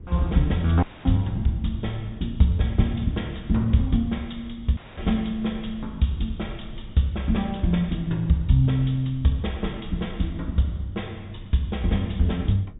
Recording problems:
treble missing; nothing above 4 kHz
low-frequency rumble; below 100 Hz, SNR 17 dB
audio cutting out; at 1 s and at 5 s

